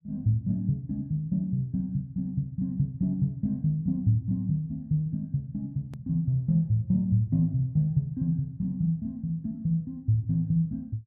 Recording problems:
hard cut with a click; at 6 s

